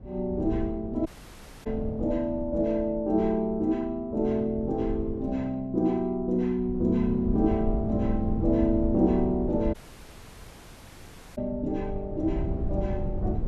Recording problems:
low-frequency rumble; below 120 Hz, SNR 8 dB
dropout; at 1 s for 0.5 s and at 9.5 s for 1.5 s

